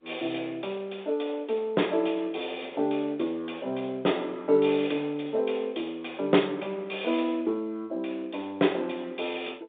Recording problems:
phone line; 220 Hz to 3.7 kHz, G.711

